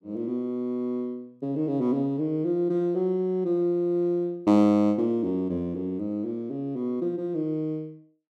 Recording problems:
none

